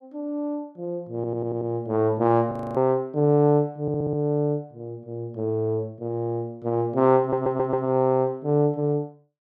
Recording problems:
stutter; at 1 s, at 4 s and at 7 s
audio freezing; at 2.5 s

